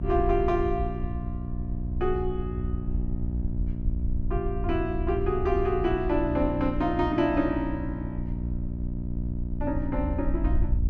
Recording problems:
hum; 60 Hz, harmonics up to 660 Hz, SNR 7 dB
rumble; below 70 Hz, SNR 6 dB

